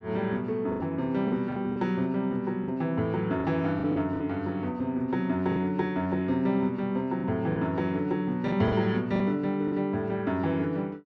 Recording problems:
packet loss; 6% of the sound replaced, filled with the last packet

